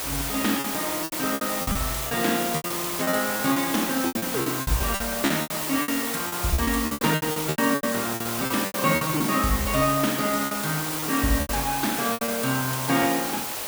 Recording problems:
background hiss; slope -2 dB per octave, SNR 2 dB
lost packets; 16% of the sound replaced, filled with repeated pitch periods

